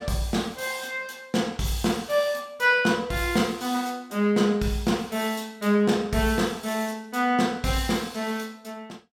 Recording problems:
none

